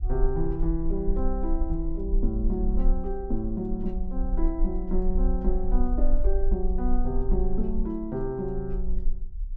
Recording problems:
low-frequency rumble; below 40 Hz, strongest tone 20 Hz, SNR 0 dB

